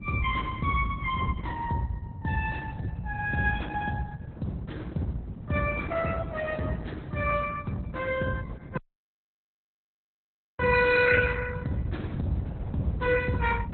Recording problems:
lossy codec; Opus, log-spectral distance 3 dB, nothing above 4.1 kHz
rumble; below 160 Hz, SNR 9 dB
wind noise; below 710 Hz, SNR 21 dB
dropout; at 9 s for 2 s

